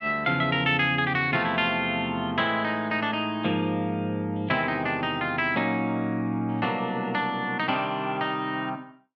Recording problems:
none

